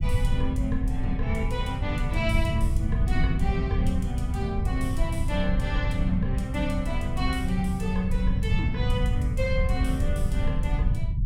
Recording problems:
rumble; below 100 Hz, SNR -2 dB

